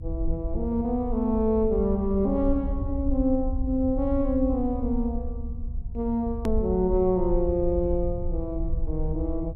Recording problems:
rumble; below 66 Hz, SNR 6 dB
click at an edit; at 6.5 s

